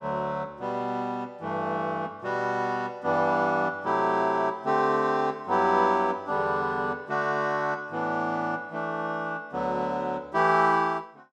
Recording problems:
none

